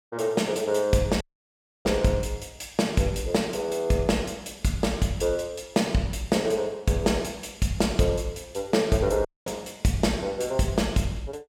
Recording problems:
dropout; at 1 s for 0.5 s and at 9.5 s

